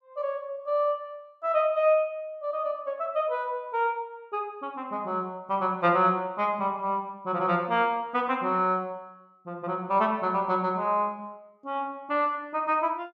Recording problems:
none

